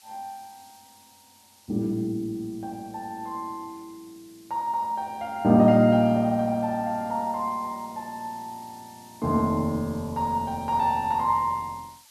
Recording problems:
background hiss; slope +3 dB per octave, SNR 26 dB

